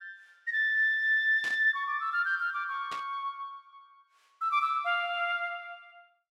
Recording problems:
burst of static; at 1.5 s and at 3 s; peak -9 dB vs average level

